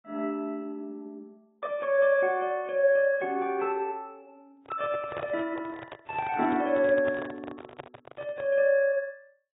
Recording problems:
treble cut off; nothing above 3.6 kHz
lossy compression; AAC, then AAC, log-spectral distance 2 dB
microphone handling noise; from 4.5 to 8.5 s; peak -7 dB vs average level

